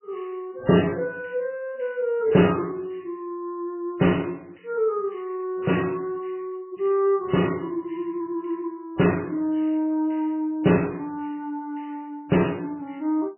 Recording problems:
lossy codec; MP3, log-spectral distance 5 dB, nothing above 2.9 kHz

